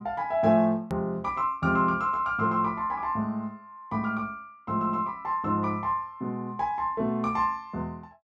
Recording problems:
click at an edit; at 1 s

